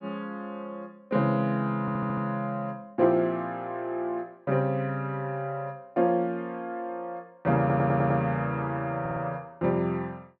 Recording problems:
audio stuttering; at 2 s, at 7.5 s and at 9 s

